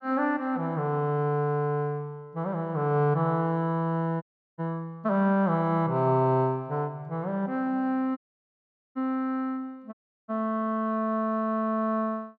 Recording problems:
audio cutting out; at 4 s, at 8 s for 1 s and at 10 s

